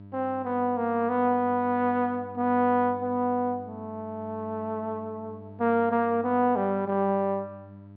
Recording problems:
treble cut off; nothing above 5.5 kHz
hum; 50 Hz, harmonics up to 1 kHz, SNR 19 dB

